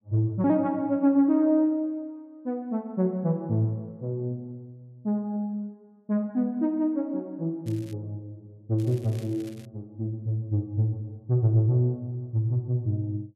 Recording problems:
crackling; at 7.5 s and at 9 s; loose cable, SNR 26 dB

